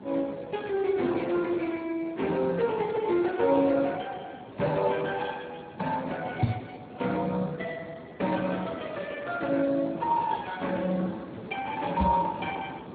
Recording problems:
codec artefacts; AAC, then Speex, log-spectral distance 5 dB
background hiss; SNR 16 dB
microphone thump; at 6.5 s and at 12 s; peak +7 dB vs average level

